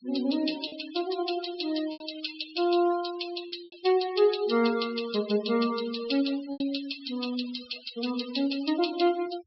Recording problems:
low-pass filter; nothing above 5.3 kHz
denoising artefacts; signal-to-artefact ratio 11 dB
lost packets; 3% of the sound replaced, filled with repeated pitch periods

